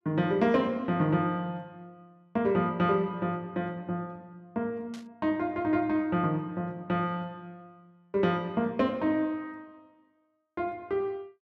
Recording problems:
burst of static; at 5 s; peak -14 dB vs average level

